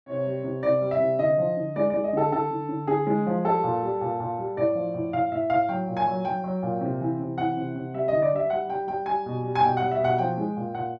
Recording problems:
none

